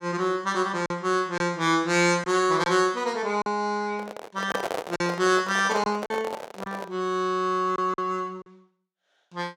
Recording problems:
packet loss; 5% of the sound replaced, filled with silence
microphone handling noise; from 4 to 7 s; peak 0 dB vs average level

